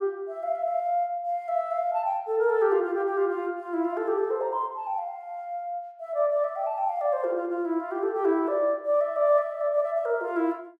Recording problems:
none

